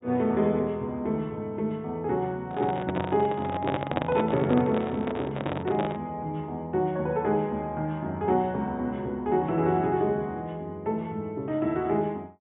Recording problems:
treble cut off; nothing above 4 kHz
handling noise; from 2.5 to 6 s; peak +3 dB vs average level

